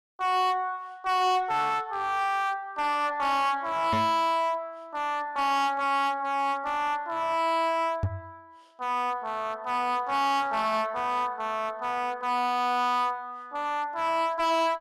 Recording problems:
distortion; hard clipping, uneven, signal-to-distortion ratio 6 dB
knock on the microphone; at 4 s and at 8 s; peak +3 dB vs average level

